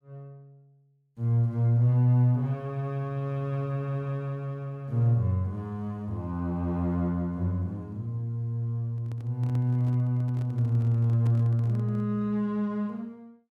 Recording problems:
handling noise; from 9 to 12 s; peak -10 dB vs average level

